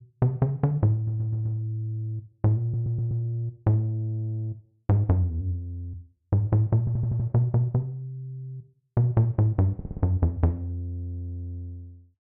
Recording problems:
stutter; 4 times, first at 1 s

